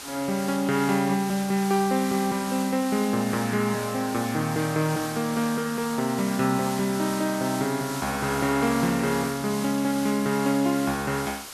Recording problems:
background hiss; slope 0 dB per octave, SNR 11 dB

